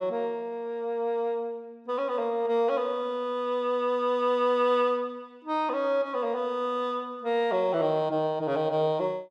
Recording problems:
none

